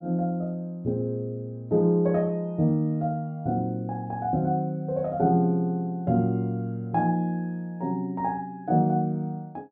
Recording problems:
none

